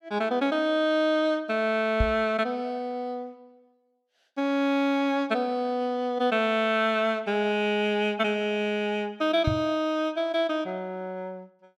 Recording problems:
microphone bump; at 2 s and at 9.5 s; peak +3 dB vs average level

